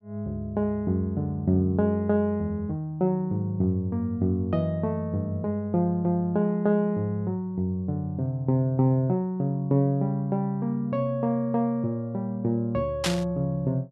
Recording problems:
static burst; at 13 s; peak +3 dB vs average level

